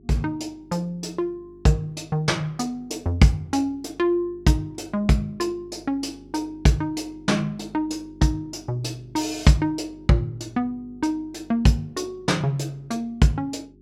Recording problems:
hum; 50 Hz, harmonics up to 400 Hz, SNR 24 dB

